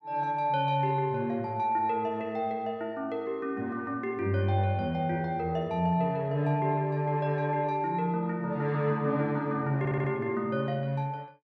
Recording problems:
audio stuttering; at 10 s

